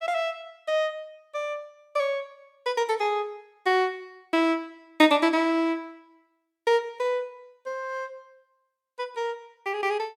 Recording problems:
none

